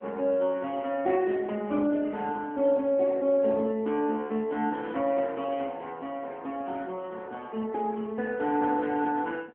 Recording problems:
telephone audio; 190 Hz to 3.2 kHz, AMR-NB

